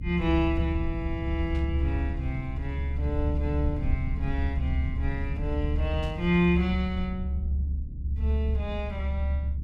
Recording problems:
low-frequency rumble; below 74 Hz, strongest tone 70 Hz, SNR -1 dB
burst of static; at 1.5 s and at 6 s; peak -15 dB vs average level

